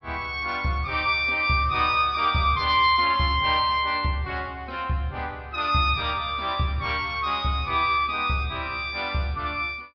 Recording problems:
treble cut off; nothing above 5.5 kHz

